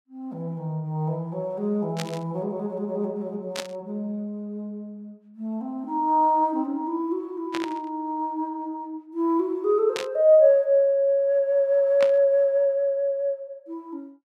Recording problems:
static burst; 5 times, first at 2 s; peak -3 dB vs average level

